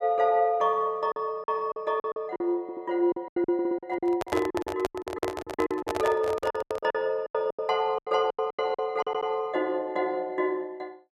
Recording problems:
packet loss; 16% of the sound replaced, filled with silence
audio stuttering; at 2.5 s, at 3.5 s and at 9 s
handling noise; from 4 to 7 s; peak +1 dB vs average level

